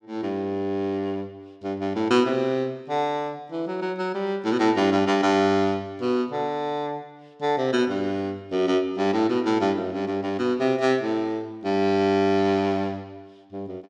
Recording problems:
none

